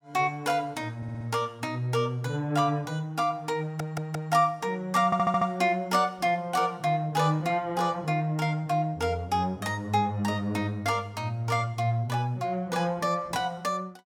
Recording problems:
stutter; at 1 s, at 3.5 s and at 5 s

